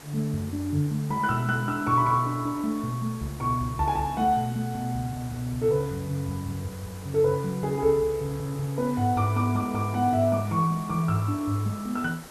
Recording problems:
hiss; slope -4 dB per octave, SNR 18 dB

